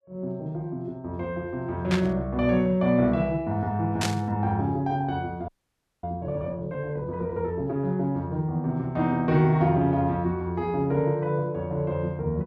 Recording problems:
static burst; at 2 s and at 4 s; peak +1 dB vs average level
audio freezing; at 5.5 s for 0.5 s

